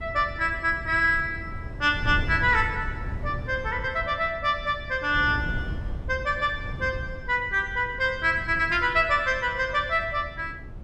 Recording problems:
wind noise; below 130 Hz, SNR 11 dB

